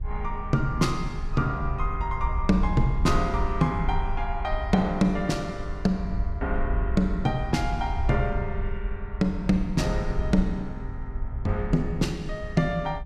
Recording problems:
wind on the microphone; below 66 Hz, SNR 5 dB

